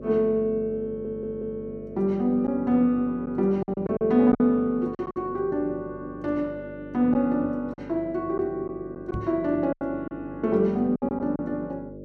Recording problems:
mains hum; 50 Hz, harmonics up to 600 Hz, SNR 15 dB
lost packets; 6% of the sound replaced, filled with silence
stutter; at 1 s
knock on the microphone; at 9 s; peak -3 dB vs average level

